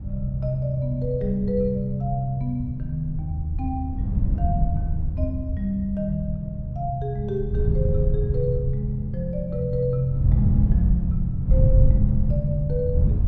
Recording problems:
wind on the microphone; below 100 Hz, SNR 0 dB

